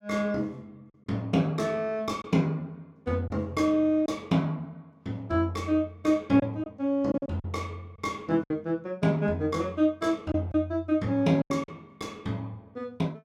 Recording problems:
lost packets; 4% of the sound replaced, filled with silence

